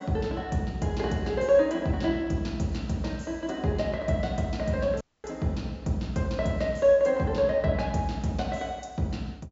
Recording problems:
low-pass filter; nothing above 8 kHz
dropout; at 5 s

